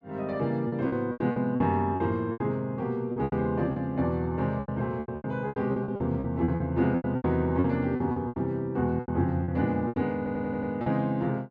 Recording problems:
lost packets; 15% of the sound replaced, filled with repeated pitch periods
stutter; at 10 s

